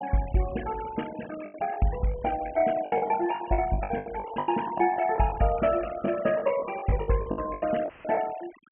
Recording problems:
low-pass filter; nothing above 3 kHz
noise reduction artefacts; signal-to-artefact ratio 16 dB
lost packets; 14% of the sound replaced, filled with the last packet
dropout; at 8 s; filled with static

